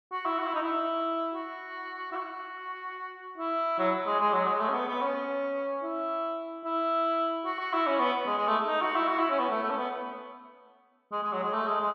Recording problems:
none

